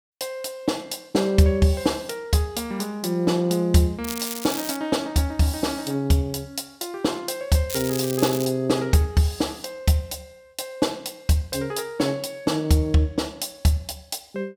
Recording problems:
crackle; at 4 s and at 7.5 s; loose cable, SNR 8 dB

